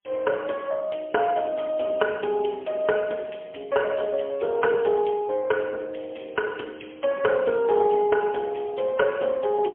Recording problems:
phone line; 320 Hz to 2 kHz, AMR-NB, then MP3

